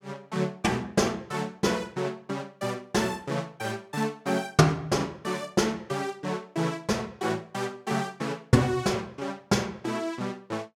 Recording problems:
none

